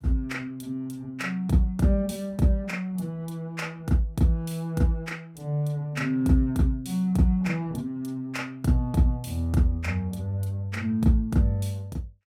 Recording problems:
none

